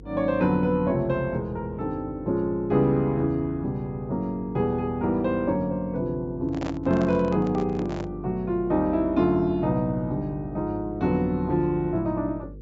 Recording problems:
treble cut off; nothing above 8 kHz
hum; 50 Hz, harmonics up to 500 Hz, SNR 18 dB
microphone handling noise; from 6.5 to 8 s; peak -6 dB vs average level

